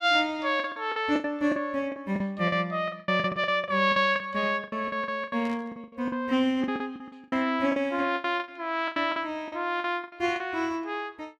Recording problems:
lost packets; 17% of the sound replaced, filled with the last packet
static burst; at 5.5 s; peak -14 dB vs average level

